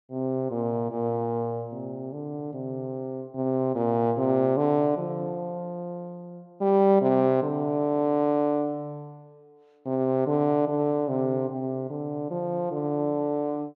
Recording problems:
none

